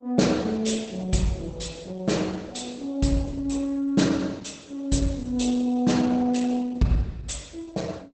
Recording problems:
codec artefacts; Opus, log-spectral distance 5 dB, nothing above 8.2 kHz

